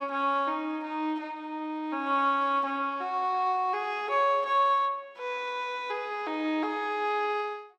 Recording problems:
none

